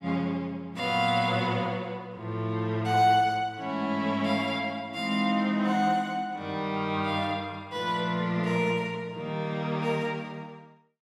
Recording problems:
none

